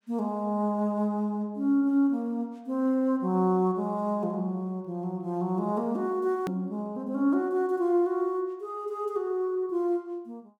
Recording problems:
click at an edit; at 6.5 s

